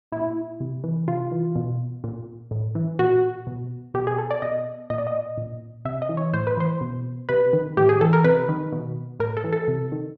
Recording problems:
none

